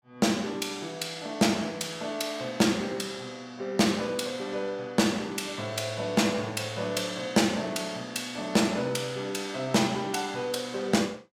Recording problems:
none

